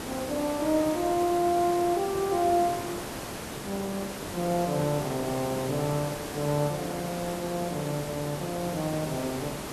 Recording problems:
background hiss; slope -5 dB per octave, SNR 7 dB

